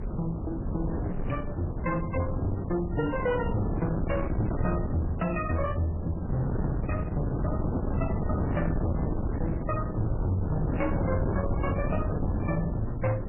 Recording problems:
lossy codec; MP3, log-spectral distance 2 dB, nothing above 2.7 kHz
distortion; soft clipping, signal-to-distortion ratio 12 dB
wind noise; below 270 Hz, SNR 0 dB

